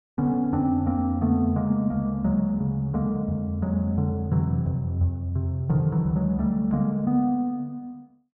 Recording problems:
none

